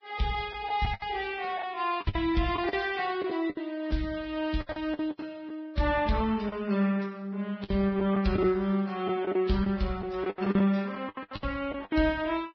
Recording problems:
lossy compression; Vorbis, then Vorbis, log-spectral distance 3 dB, nothing above 5 kHz
lost packets; 11% of the sound replaced, filled with the last packet

